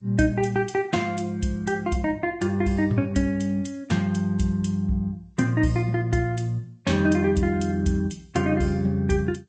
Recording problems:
codec artefacts; G.722, then Vorbis, log-spectral distance 2 dB, nothing above 7.8 kHz

